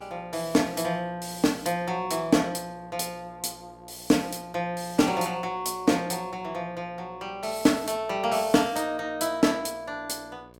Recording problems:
electrical hum; 60 Hz, harmonics up to 2.3 kHz, SNR 25 dB

